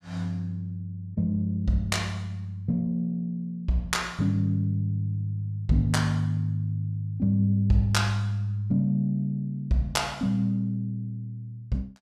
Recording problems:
none

